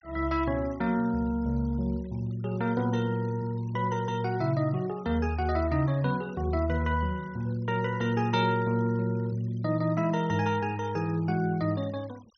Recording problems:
treble missing; nothing above 6.1 kHz
noise reduction artefacts; signal-to-artefact ratio 24 dB

